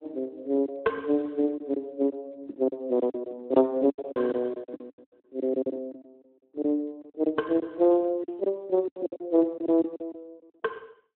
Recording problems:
telephone audio; 240 Hz to 2.2 kHz, Speex
packet loss; 13% of the sound replaced, filled with silence

